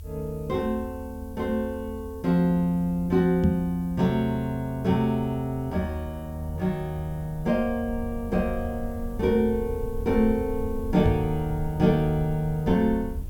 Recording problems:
background hiss; SNR 29 dB
low-frequency rumble; below 82 Hz, SNR 12 dB
knock on the microphone; at 3.5 s and at 11 s; peak +6 dB vs average level

